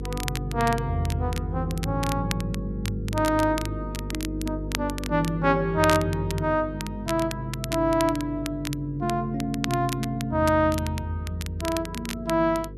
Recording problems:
hum; 50 Hz, harmonics up to 500 Hz, SNR 9 dB
crackle; vinyl, SNR 11 dB

